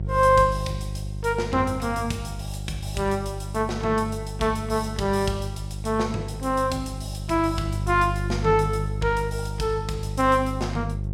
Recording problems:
hum; 50 Hz, harmonics up to 400 Hz, SNR 7 dB

